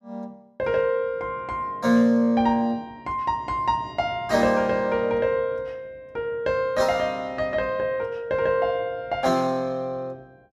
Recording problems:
none

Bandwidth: 15.5 kHz